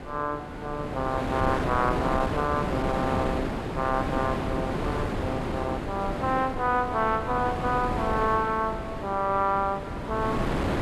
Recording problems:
wind noise; below 790 Hz, SNR 3 dB

